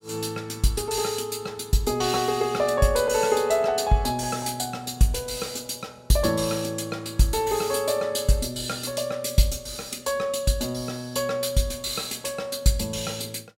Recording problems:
none

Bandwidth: 16 kHz